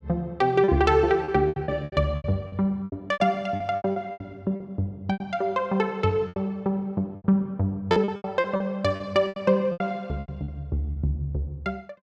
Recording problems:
lost packets; 14% of the sound replaced, filled with repeated pitch periods

